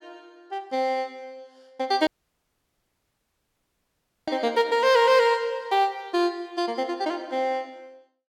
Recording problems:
dropout; at 2 s for 2 s

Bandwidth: 17 kHz